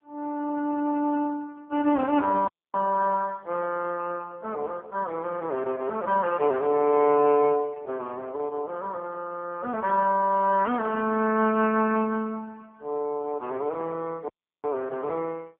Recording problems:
telephone audio; 240 Hz to 2.6 kHz, AMR-NB
dropout; at 2.5 s and at 14 s

